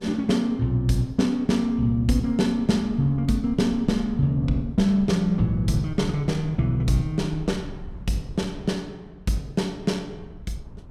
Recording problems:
wind on the microphone; below 100 Hz, SNR 18 dB

